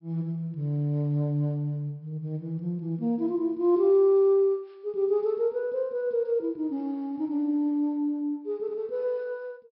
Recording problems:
treble cut off; nothing above 5.4 kHz

